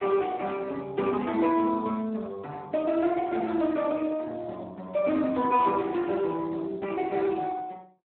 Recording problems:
phone line; 190 Hz to 3 kHz, Speex

